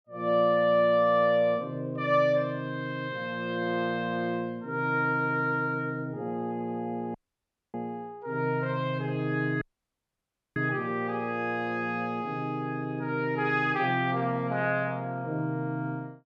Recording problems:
dropout; at 7 s for 0.5 s and at 9.5 s for 1 s

